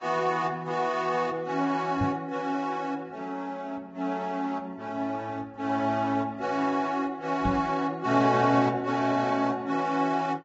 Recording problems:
lossy compression; AAC, then Vorbis, log-spectral distance 3 dB, nothing above 7.6 kHz
microphone thump; at 2 s and at 7.5 s; peak +2 dB vs average level

